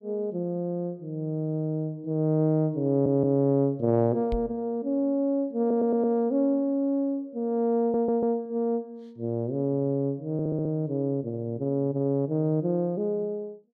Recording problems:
stutter; 4 times, first at 3 s
microphone thump; at 4.5 s; peak -3 dB vs average level

